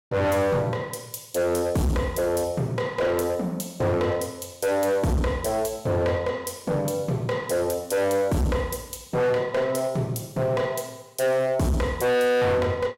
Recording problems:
distorted audio; hard clipping, signal-to-distortion ratio 7 dB

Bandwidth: 16.5 kHz